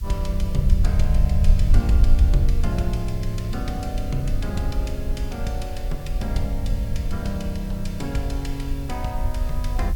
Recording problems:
hiss; slope +3 dB per octave, SNR 19 dB
rumble; below 68 Hz, SNR -4 dB

